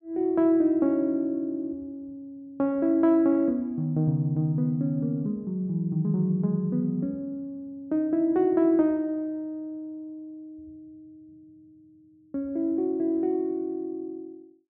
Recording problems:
none

